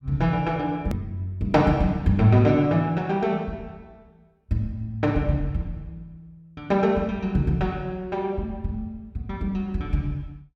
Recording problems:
click at an edit; at 1 s

